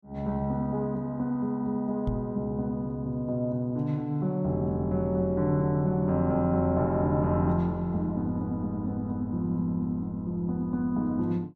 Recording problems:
microphone bump; at 2 s; peak +1 dB vs average level

